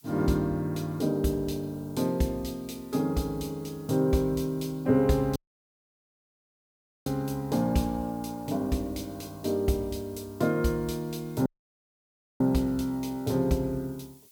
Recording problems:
hiss; SNR 26 dB
audio cutting out; at 5.5 s for 1.5 s and at 11 s for 1 s

